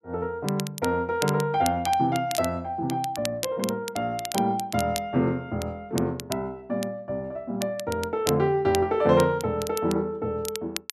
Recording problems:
crackle; vinyl, SNR 11 dB

